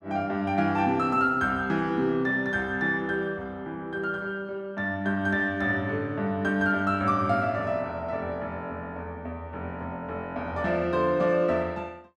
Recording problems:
none

